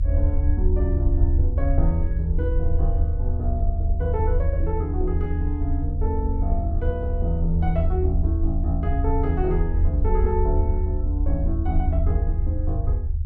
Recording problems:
rumble; below 78 Hz, SNR -5 dB

